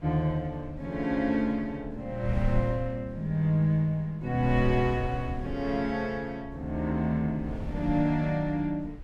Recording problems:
wind on the microphone; below 80 Hz, SNR 12 dB

